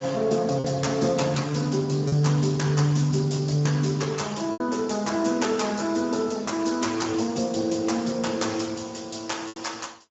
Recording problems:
low-pass filter; nothing above 7.6 kHz
codec artefacts; Speex, log-spectral distance 8 dB
lost packets; 2% of the sound replaced, filled with repeated pitch periods

